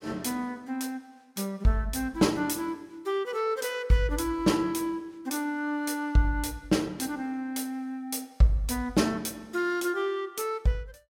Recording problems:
none

